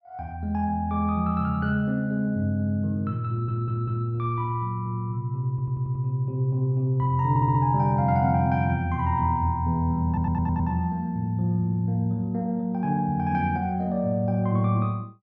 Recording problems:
stutter; 4 times, first at 3.5 s

